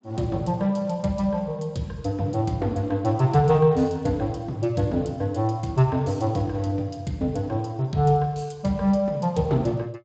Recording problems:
codec artefacts; Speex, log-spectral distance 3 dB, nothing above 7.6 kHz

